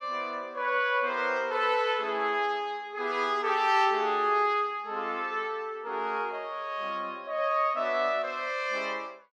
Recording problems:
none

